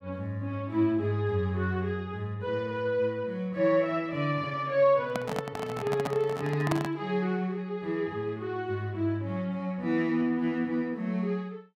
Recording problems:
handling noise; from 5 to 7 s; peak +3 dB vs average level

